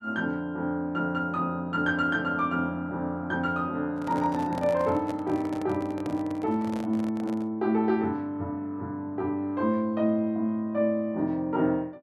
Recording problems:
handling noise; from 4 to 7.5 s; peak -5 dB vs average level

